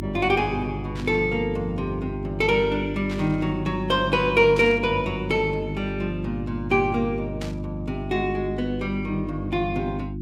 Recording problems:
mains hum; 50 Hz, harmonics up to 350 Hz, SNR 7 dB
static burst; 4 times, first at 1 s; peak -9 dB vs average level

